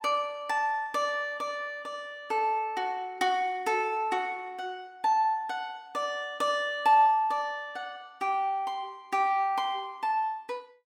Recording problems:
none

